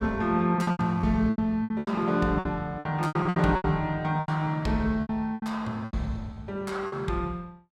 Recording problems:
packet loss; 16% of the sound replaced, filled with repeated pitch periods

